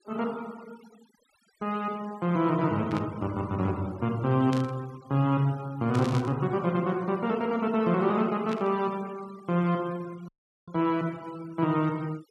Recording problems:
denoising artefacts; signal-to-artefact ratio 23 dB
static burst; 4 times, first at 3 s; peak -7 dB vs average level
audio cutting out; at 10 s

